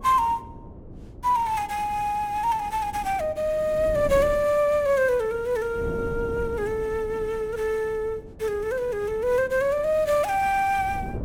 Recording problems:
wind on the microphone; below 300 Hz, SNR 15 dB

